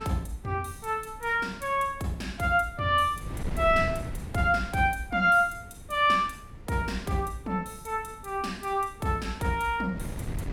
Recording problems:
wind noise; below 180 Hz, SNR 14 dB

